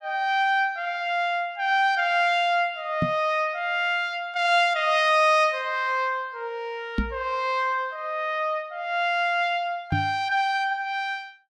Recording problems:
microphone thump; at 3 s, at 7 s and at 10 s; peak +2 dB vs average level

